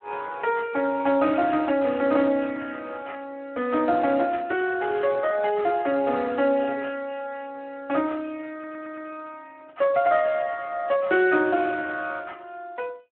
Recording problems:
phone line; 190 Hz to 2.8 kHz, Speex
burst of static; at 7 s; peak -27 dB vs average level
audio stuttering; at 8.5 s

